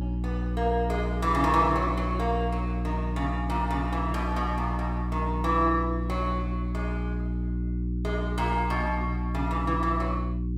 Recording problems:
mains hum; 60 Hz, harmonics up to 360 Hz, SNR 1 dB

